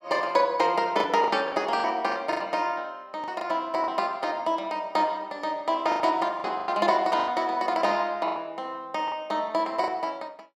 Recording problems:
packet loss; 8% of the sound replaced, filled with the last packet

